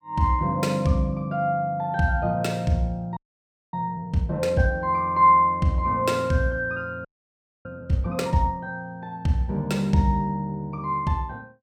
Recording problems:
frozen audio; at 3 s for 0.5 s and at 7 s for 0.5 s

